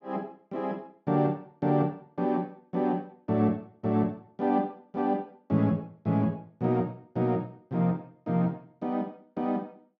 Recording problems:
none

